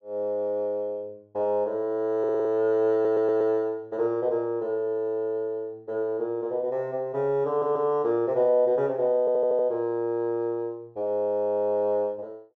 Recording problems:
stutter; 4 times, first at 2 s

